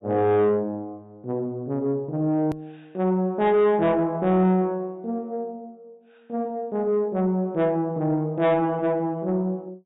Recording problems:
low-pass filter; nothing above 4 kHz
distortion; soft clipping, signal-to-distortion ratio 11 dB
click at an edit; at 2.5 s

